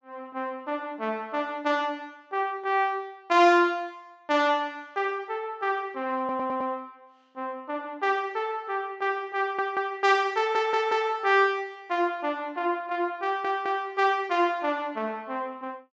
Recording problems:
low-pass filter; nothing above 8 kHz
stutter; 4 times, first at 6 s

